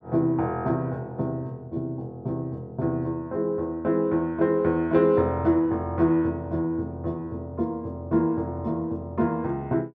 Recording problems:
none

